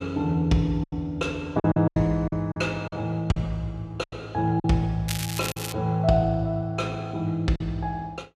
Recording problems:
packet loss; 7% of the sound replaced, filled with silence
crackle; at 5 s; loose cable, SNR 7 dB

